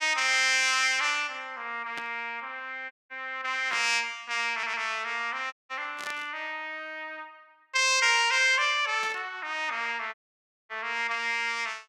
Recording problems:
static burst; 4 times, first at 2 s; peak -8 dB vs average level
dropout; at 3 s, at 5.5 s and at 10 s for 0.5 s
audio stuttering; at 4.5 s

